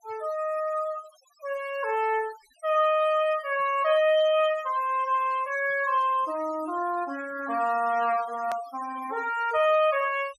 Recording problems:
noise reduction artefacts; signal-to-artefact ratio 20 dB
click at an edit; at 8.5 s

